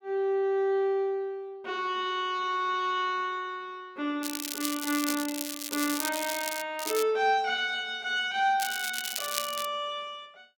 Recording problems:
crackle; from 4 to 6.5 s, at 7 s and from 8.5 to 9.5 s; loose cable, SNR 4 dB

